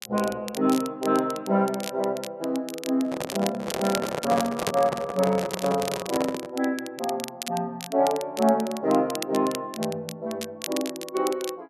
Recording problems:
crackling; vinyl, SNR 11 dB
microphone handling noise; from 3 to 6.5 s; peak +3 dB vs average level

